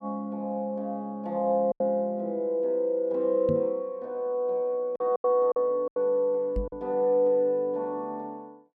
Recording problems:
packet loss; 4% of the sound replaced, filled with silence
knock on the microphone; at 3.5 s and at 6.5 s; peak 0 dB vs average level

